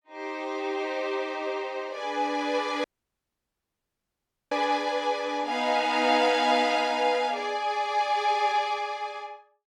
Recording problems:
dropout; at 3 s for 1.5 s

